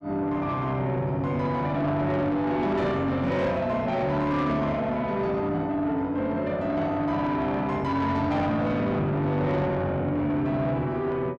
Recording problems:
distortion; soft clipping, signal-to-distortion ratio 11 dB

